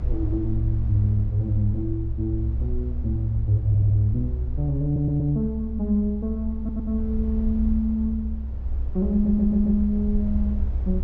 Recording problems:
low-pass filter; nothing above 8 kHz
low-frequency rumble; below 66 Hz, strongest tone 64 Hz, SNR 5 dB
audio stuttering; 4 times, first at 3.5 s

